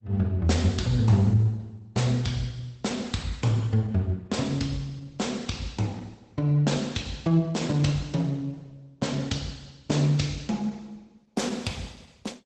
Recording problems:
codec artefacts; Opus, log-spectral distance 3 dB, nothing above 12 kHz

